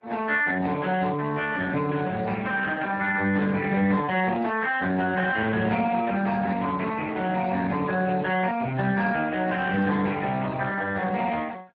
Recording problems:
lossy compression; AAC, then Speex, log-spectral distance 4 dB

